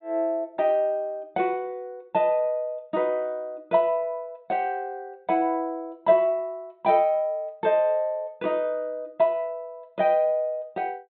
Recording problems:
treble missing; nothing above 4 kHz

